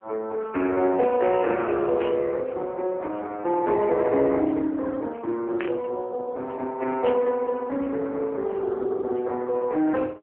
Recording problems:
phone line; 240 Hz to 3.2 kHz, AMR-NB
static burst; at 2 s, at 5.5 s and at 7 s; peak -4 dB vs average level

